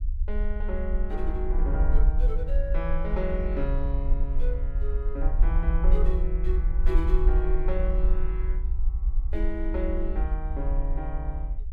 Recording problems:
low-frequency rumble; below 48 Hz, SNR -6 dB

